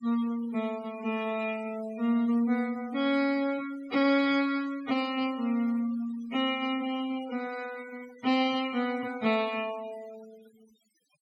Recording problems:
noise reduction artefacts; signal-to-artefact ratio 18 dB

